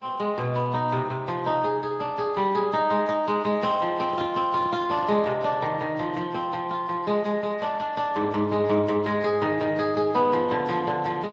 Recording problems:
codec artefacts; Speex, then AAC, log-spectral distance 3 dB
microphone handling noise; from 4 to 5.5 s; peak -6 dB vs average level

